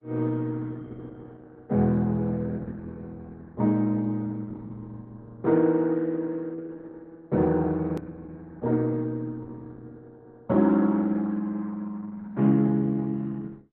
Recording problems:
lossy compression; Opus, log-spectral distance 3 dB, nothing above 13.1 kHz
edit click; at 8 s

